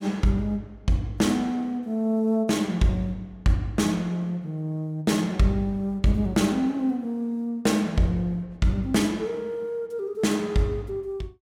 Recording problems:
none

